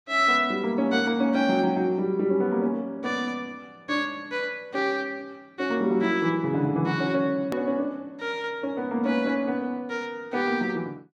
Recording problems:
edit click; at 7.5 s

